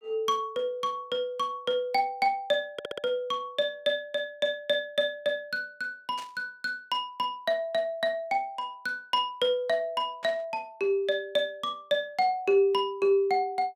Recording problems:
stutter; at 2.5 s
burst of static; at 6 s and at 10 s; peak -10 dB vs average level

